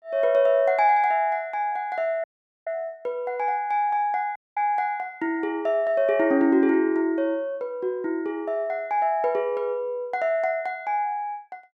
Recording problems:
dropout; at 2 s and at 4.5 s

